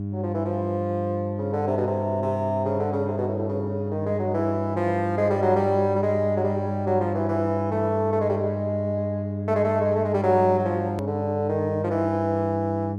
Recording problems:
electrical hum; 50 Hz, harmonics up to 700 Hz, SNR 5 dB
hard cut with a click; at 11 s

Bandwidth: 12.5 kHz